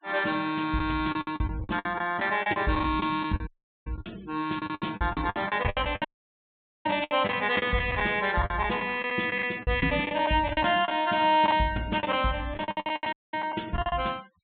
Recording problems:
treble missing; nothing above 4 kHz
noise reduction artefacts; signal-to-artefact ratio 24 dB
packet loss; 16% of the sound replaced, filled with the last packet
dropout; at 3.5 s, at 6 s for 1 s and at 13 s

